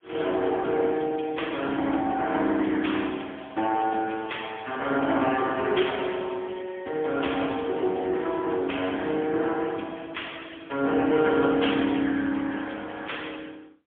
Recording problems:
phone line; 220 Hz to 3.4 kHz, AMR-NB, then MP3

